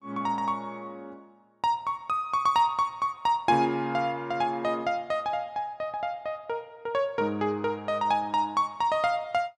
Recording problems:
none

